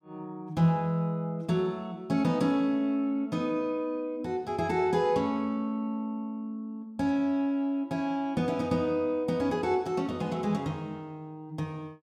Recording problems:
none

